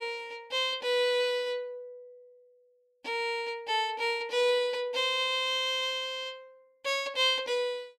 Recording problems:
none

